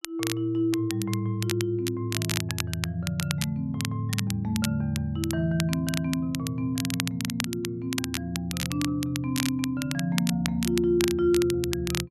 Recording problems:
crackle; vinyl, SNR 7 dB

